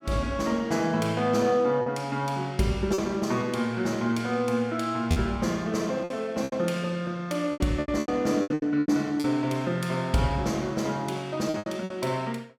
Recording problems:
lost packets; 8% of the sound replaced, filled with repeated pitch periods

